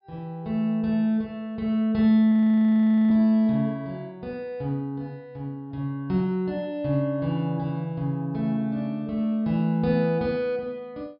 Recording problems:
low-pass filter; nothing above 5.5 kHz
frozen audio; at 2.5 s for 1 s

